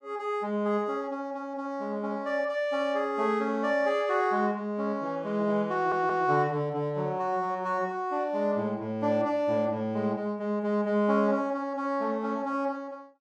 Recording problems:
stutter; at 5.5 s

